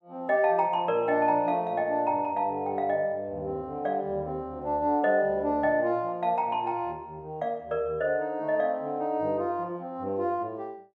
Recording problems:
none

